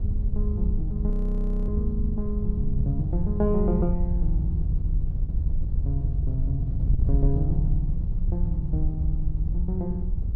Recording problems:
wind noise; below 74 Hz, SNR -3 dB
audio freezing; at 1 s for 0.5 s

